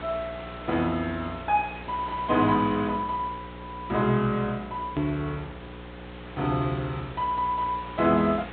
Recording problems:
treble missing; nothing above 4 kHz
electrical hum; 60 Hz, harmonics up to 540 Hz, SNR 16 dB
hiss; SNR 16 dB
edit click; at 5 s

